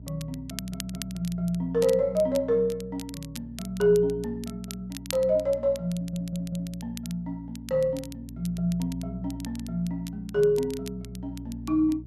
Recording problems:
electrical hum; 60 Hz, harmonics up to 420 Hz, SNR 15 dB
crackle; vinyl, SNR 16 dB
stutter; at 0.5 s and at 6 s

